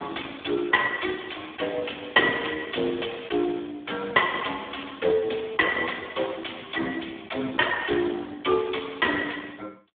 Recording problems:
phone line; 280 Hz to 3.5 kHz, Speex

